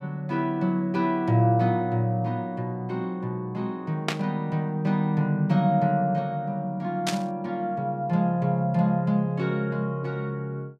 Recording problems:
static burst; at 4 s and at 7 s; peak +3 dB vs average level

